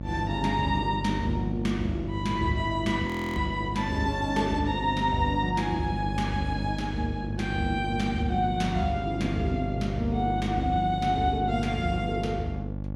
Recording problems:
electrical hum; 50 Hz, harmonics up to 600 Hz, SNR 5 dB
frozen audio; at 3 s

